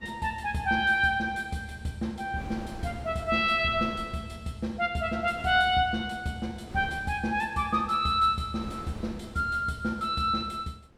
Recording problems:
wind on the microphone; below 450 Hz, SNR 18 dB

